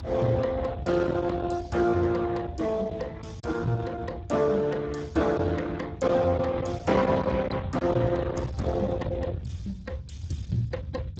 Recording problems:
lossy codec; Speex, log-spectral distance 3 dB, nothing above 7.3 kHz
distorted audio; soft clipping, signal-to-distortion ratio 12 dB
low-frequency rumble; below 480 Hz, SNR 10 dB
packet loss; 1.3% of the sound replaced, filled with silence

